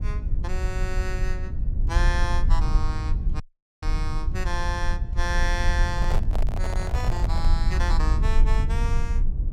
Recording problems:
low-frequency rumble; below 62 Hz, SNR -6 dB
dropout; at 3.5 s
microphone handling noise; from 6 to 7.5 s; peak +2 dB vs average level

